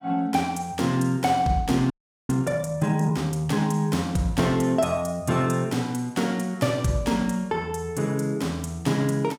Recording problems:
audio freezing; at 2 s

